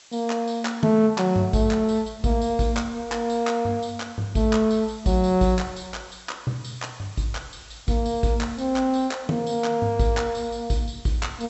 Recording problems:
treble missing; nothing above 7.8 kHz
background hiss; slope +2 dB per octave, SNR 25 dB

